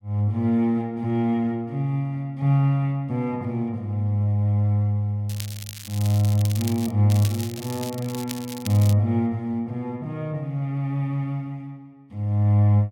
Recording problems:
crackling; from 5.5 to 7 s and from 7 to 9 s; loose cable, SNR 13 dB

